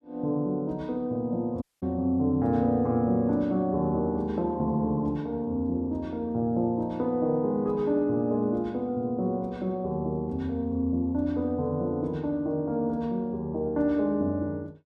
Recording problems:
dropout; at 1.5 s

